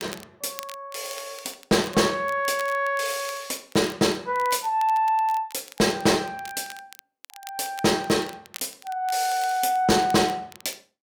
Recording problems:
distortion; hard clipping, uneven, signal-to-distortion ratio 12 dB
crackle; vinyl, SNR 20 dB

